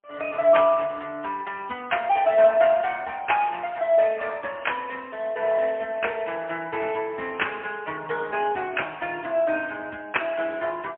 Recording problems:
telephone audio; 300 Hz to 3.3 kHz, AMR-NB, then MP3

